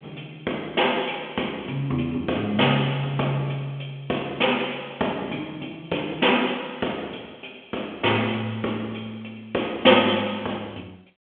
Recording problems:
telephone audio; 240 Hz to 3.4 kHz, G.726

